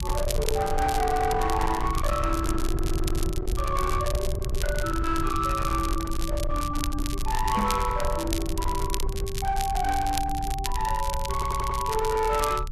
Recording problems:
distorted audio; hard clipping, signal-to-distortion ratio 11 dB
rumble; below 80 Hz, SNR 4 dB
crackling; vinyl, SNR 10 dB
stutter; at 2.5 s and at 11 s
microphone bump; at 7.5 s; peak +4 dB vs average level

